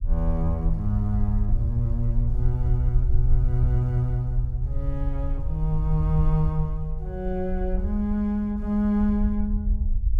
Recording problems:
low-frequency rumble; below 62 Hz, SNR 1 dB

